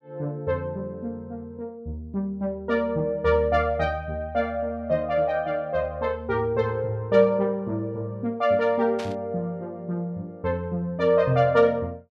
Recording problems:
static burst; at 9 s; peak -9 dB vs average level

